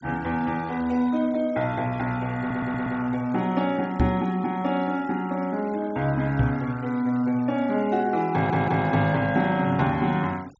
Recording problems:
treble missing; nothing above 8 kHz
noise reduction artefacts; signal-to-artefact ratio 23 dB
stutter; at 2.5 s and at 8.5 s
microphone thump; at 4 s and at 6.5 s; peak +4 dB vs average level

